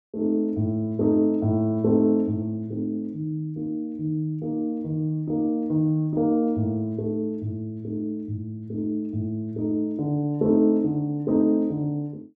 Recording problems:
none

